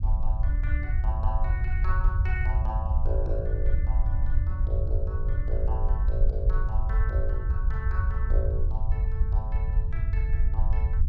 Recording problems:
low-frequency rumble; below 68 Hz, SNR -11 dB

